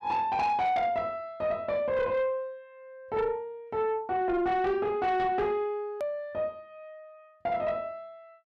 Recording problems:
distorted audio; soft clipping, signal-to-distortion ratio 12 dB
edit click; at 6 s

